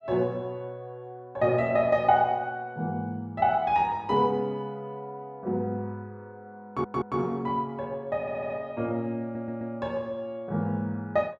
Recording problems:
stutter; at 6.5 s, at 8 s and at 9 s

